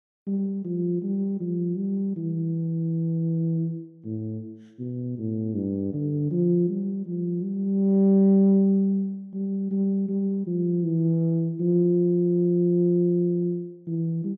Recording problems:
none

